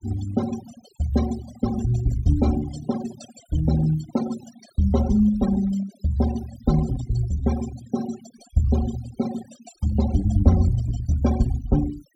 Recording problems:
noise reduction artefacts; signal-to-artefact ratio 15 dB

